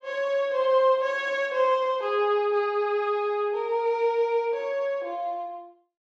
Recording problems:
none

